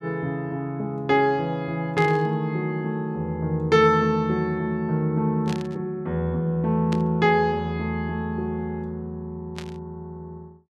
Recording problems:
burst of static; 4 times, first at 2 s; peak -7 dB vs average level

